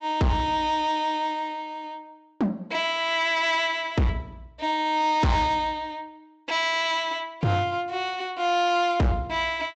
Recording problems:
low-pass filter; nothing above 8 kHz
distortion; hard clipping, uneven, signal-to-distortion ratio 7 dB

